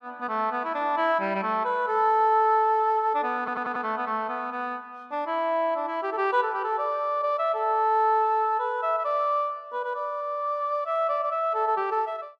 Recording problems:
audio stuttering; at 3.5 s

